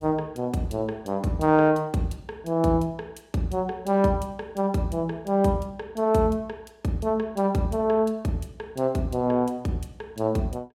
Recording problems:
none

